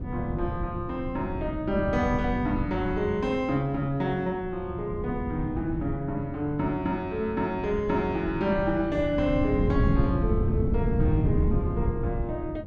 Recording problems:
wind noise; below 170 Hz, SNR 3 dB

